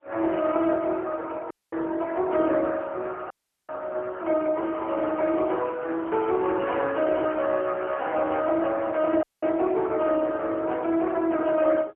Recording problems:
phone line; 300 Hz to 3.4 kHz, AMR-NB, then MP3
dropout; at 1.5 s, at 3.5 s and at 9 s
handling noise; from 4.5 to 8.5 s; peak -11 dB vs average level

